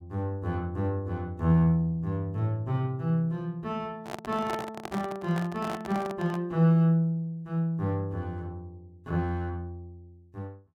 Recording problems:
microphone handling noise; from 4 to 6.5 s; peak -3 dB vs average level

